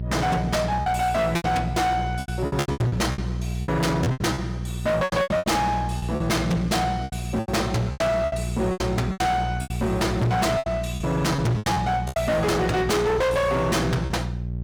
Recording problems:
distortion; hard clipping, signal-to-distortion ratio 6 dB
hum; 60 Hz, harmonics up to 600 Hz, SNR 7 dB
packet loss; 14% of the sound replaced, filled with repeated pitch periods

